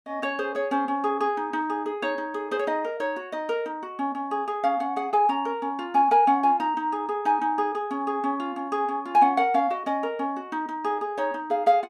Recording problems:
none

